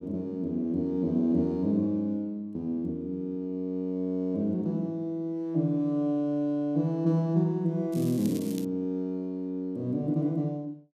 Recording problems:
crackling; at 8 s; loose cable, SNR 17 dB

